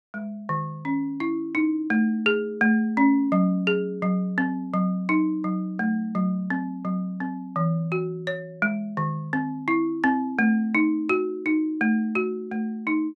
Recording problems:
none

